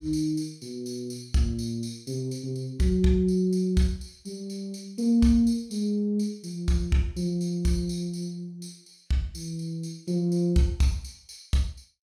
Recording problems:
none

